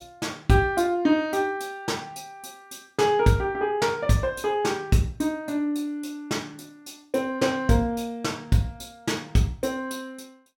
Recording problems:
none

